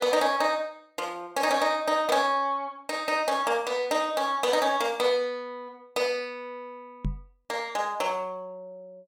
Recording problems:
microphone bump; at 7 s; peak 0 dB vs average level

